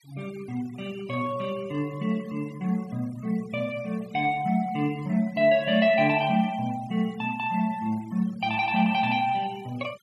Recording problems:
noise reduction artefacts; signal-to-artefact ratio 23 dB

